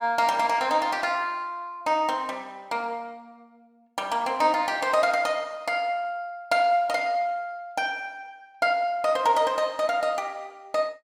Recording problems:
none

